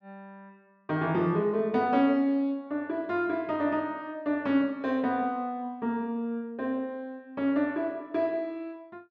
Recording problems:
none

